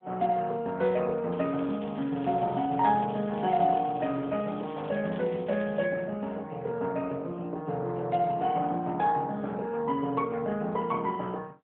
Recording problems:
phone line; 150 Hz to 3.4 kHz, AMR-NB
crackle; from 1.5 to 6 s; loose cable, SNR 21 dB

